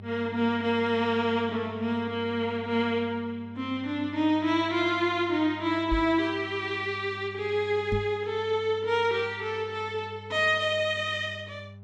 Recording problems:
hum; 50 Hz, harmonics up to 600 Hz, SNR 17 dB
microphone bump; at 6 s and at 8 s; peak +1 dB vs average level

